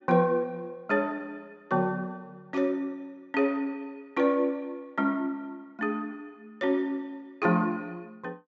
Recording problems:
treble cut off; nothing above 8 kHz
static burst; at 2.5 s; peak -14 dB vs average level

